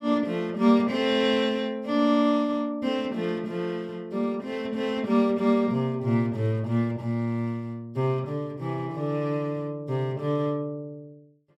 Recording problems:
none

